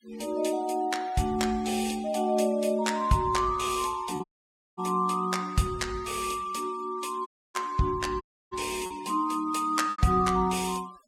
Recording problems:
denoising artefacts; signal-to-artefact ratio 22 dB
lost packets; 1.6% of the sound replaced, filled with repeated pitch periods
dropout; at 4 s for 0.5 s, at 7.5 s and at 8 s

